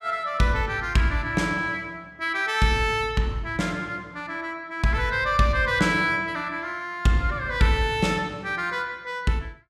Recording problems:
none

